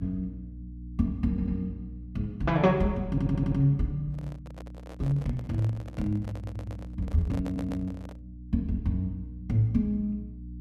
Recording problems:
hum; 60 Hz, harmonics up to 300 Hz, SNR 13 dB
audio stuttering; 4 times, first at 1.5 s
handling noise; from 4 to 8 s; peak -7 dB vs average level

